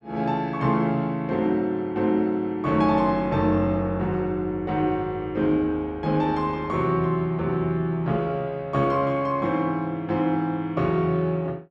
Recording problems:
none

